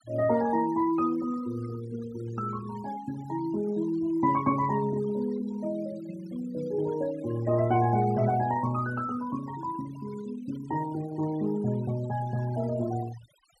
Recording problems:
noise reduction artefacts; signal-to-artefact ratio 18 dB

